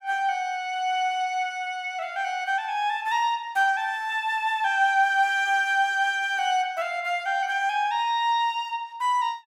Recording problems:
none

